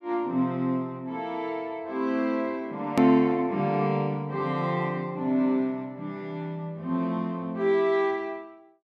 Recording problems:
hard cut with a click; at 3 s

